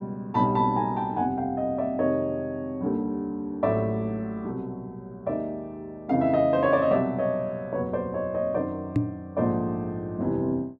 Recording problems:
microphone thump; at 9 s; peak +6 dB vs average level

